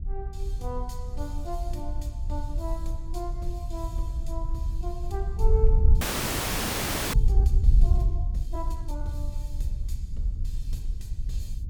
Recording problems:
wind on the microphone; below 60 Hz, SNR -9 dB
frozen audio; at 6 s for 1 s

